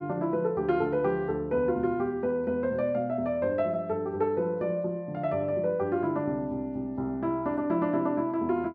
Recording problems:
none

